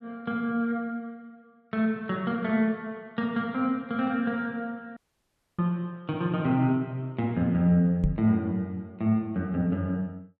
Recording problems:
dropout; at 5 s for 0.5 s
microphone bump; at 8 s; peak +5 dB vs average level

